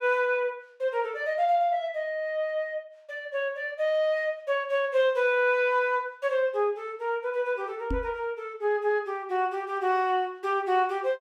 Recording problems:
knock on the microphone; at 8 s; peak -1 dB vs average level

